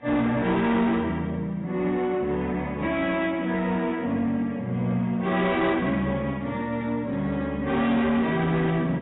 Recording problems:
codec artefacts; AAC, log-spectral distance 2 dB, nothing above 3.8 kHz
distorted audio; soft clipping, signal-to-distortion ratio 11 dB

